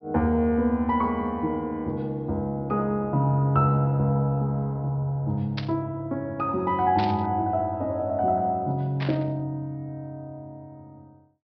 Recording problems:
low-pass filter; nothing above 5.5 kHz
burst of static; at 5.5 s, at 7 s and at 9 s; peak -4 dB vs average level

